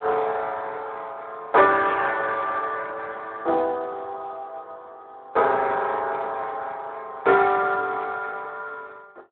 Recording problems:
phone line; 340 Hz to 2.6 kHz, Speex

